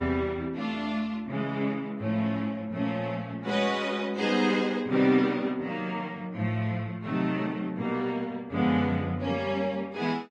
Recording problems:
lossy compression; Vorbis, log-spectral distance 2 dB, nothing above 10.4 kHz

